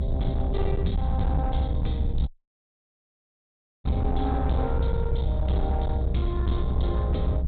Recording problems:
low-pass filter; nothing above 4 kHz
distorted audio; hard clipping, signal-to-distortion ratio 10 dB
low-frequency rumble; below 96 Hz, SNR -3 dB
audio cutting out; at 2.5 s for 1.5 s

